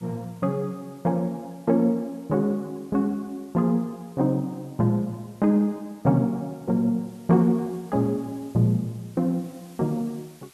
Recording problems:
hiss; slope -1 dB per octave, SNR 30 dB

